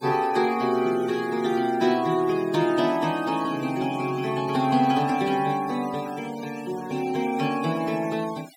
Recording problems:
denoising artefacts; signal-to-artefact ratio 19 dB

